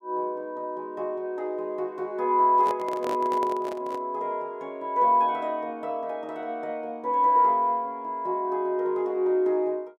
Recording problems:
handling noise; from 2.5 to 4 s; peak -4 dB vs average level

